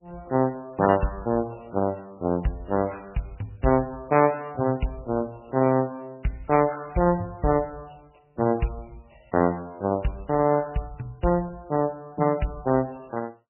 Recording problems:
lossy codec; MP3, log-spectral distance 5 dB, nothing above 2.8 kHz

